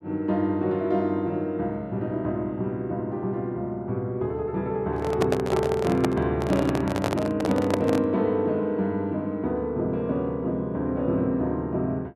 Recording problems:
microphone handling noise; from 5 to 8 s; peak +4 dB vs average level

